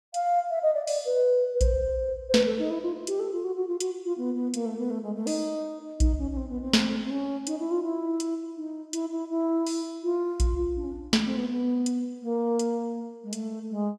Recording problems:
none

